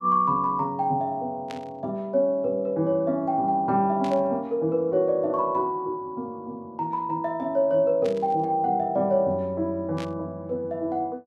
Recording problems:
burst of static; 4 times, first at 1.5 s; peak -10 dB vs average level

